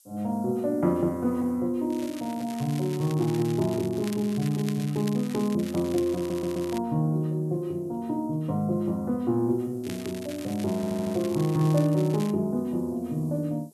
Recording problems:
hiss; SNR 30 dB
crackle; from 2 to 7 s and from 10 to 12 s; loose cable, SNR 17 dB
audio stuttering; at 6 s and at 11 s

